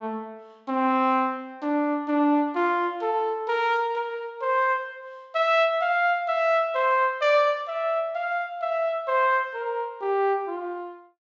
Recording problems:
treble missing; nothing above 8 kHz

